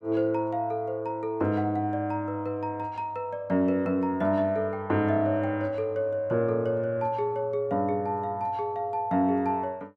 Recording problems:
none

